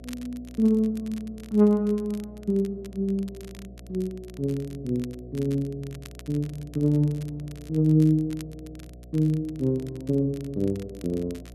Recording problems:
electrical hum; 60 Hz, harmonics up to 720 Hz, SNR 19 dB
crackle; vinyl, SNR 25 dB

